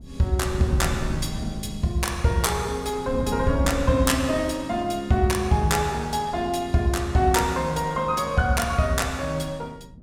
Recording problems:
wind noise; below 190 Hz, SNR 13 dB

